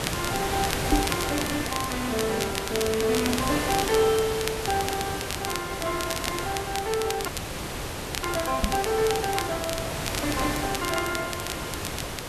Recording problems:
hiss; slope -4 dB per octave, SNR 2 dB
crackling; vinyl, SNR 6 dB
knock on the microphone; at 1 s and at 8.5 s; peak +9 dB vs average level
audio freezing; at 7.5 s for 1 s

